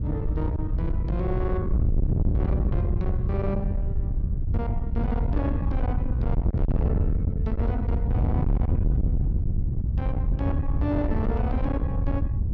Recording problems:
distorted audio; soft clipping, signal-to-distortion ratio 7 dB
wind on the microphone; below 110 Hz, SNR -5 dB

